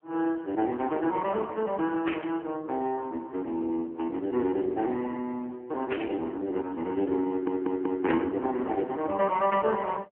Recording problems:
telephone audio; 220 Hz to 3.3 kHz, AMR-NB
burst of static; at 2 s, at 6 s and at 8 s; peak +3 dB vs average level
stutter; at 7.5 s

